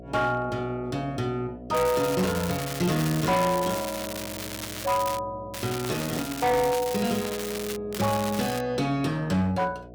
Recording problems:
distorted audio; hard clipping, signal-to-distortion ratio 12 dB
mains hum; 60 Hz, harmonics up to 720 Hz, SNR 18 dB
crackle; from 2 to 5 s, from 5.5 to 8 s and at 8 s; loose cable, SNR 8 dB

